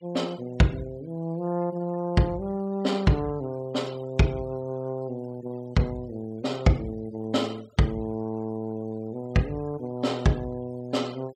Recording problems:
noise reduction artefacts; signal-to-artefact ratio 25 dB

